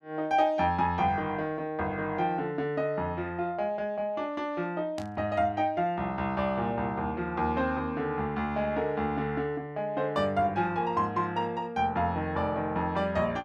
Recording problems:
burst of static; at 5 s; peak -10 dB vs average level

